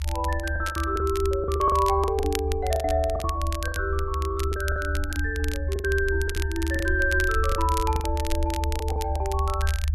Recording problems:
rumble; below 76 Hz, strongest tone 76 Hz, SNR 3 dB
crackle; vinyl, SNR 12 dB
lost packets; 12% of the sound replaced, filled with the last packet

